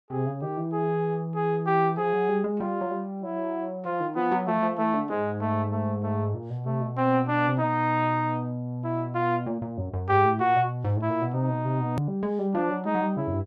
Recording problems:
hard cut with a click; at 12 s

